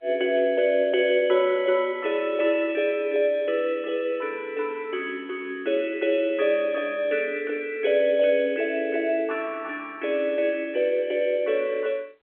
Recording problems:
phone line; 320 Hz to 3.5 kHz, G.711

